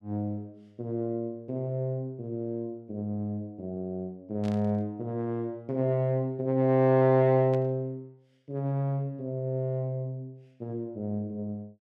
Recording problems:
burst of static; at 4.5 s and at 7.5 s; peak -14 dB vs average level

